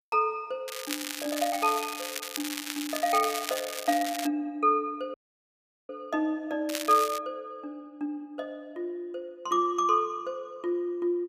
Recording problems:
crackling; from 0.5 to 4.5 s and at 6.5 s; loose cable, SNR 6 dB
audio cutting out; at 5 s for 1 s

